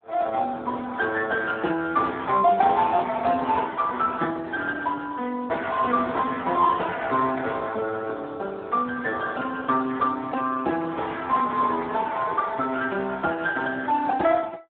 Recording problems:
telephone audio; 280 Hz to 4 kHz, Speex

